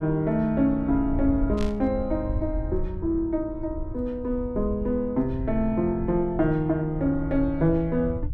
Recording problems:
rumble; below 82 Hz, SNR 10 dB
static burst; at 1.5 s; peak -9 dB vs average level

